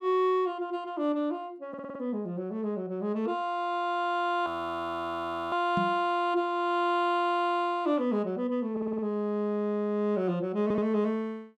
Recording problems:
stutter; at 1.5 s, at 8.5 s and at 11 s
frozen audio; at 4.5 s for 1 s
microphone bump; at 6 s; peak +1 dB vs average level

